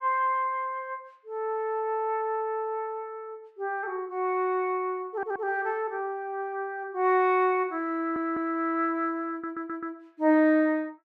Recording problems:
audio stuttering; at 5 s, at 8 s and at 9.5 s

